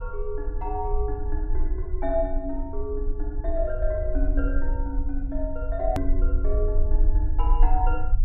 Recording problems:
rumble; below 46 Hz, strongest tone 22 Hz, SNR -3 dB
hard cut with a click; at 6 s

